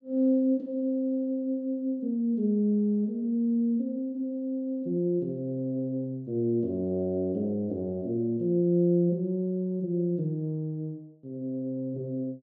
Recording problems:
none

